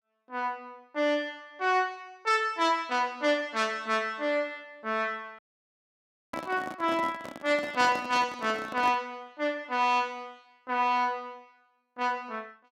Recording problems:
audio cutting out; at 5.5 s for 1 s
microphone handling noise; from 6.5 to 9 s; peak -5 dB vs average level

